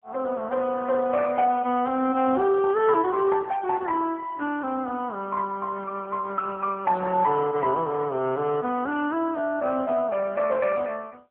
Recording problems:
telephone audio; 240 Hz to 3.5 kHz, AMR-NB

